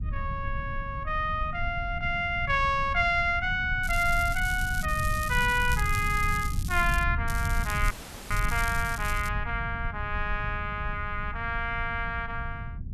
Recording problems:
rumble; below 100 Hz, SNR 6 dB
crackle; from 4 to 7 s and from 7.5 to 9.5 s; loose cable, SNR 13 dB
dropout; at 8 s

